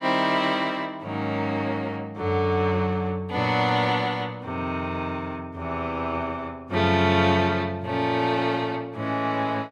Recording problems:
none

